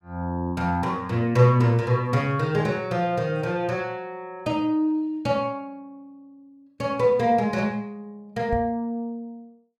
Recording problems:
microphone thump; at 8.5 s; peak -2 dB vs average level

